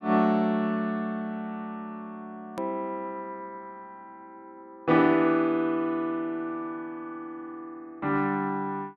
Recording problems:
hard cut with a click; at 2.5 s

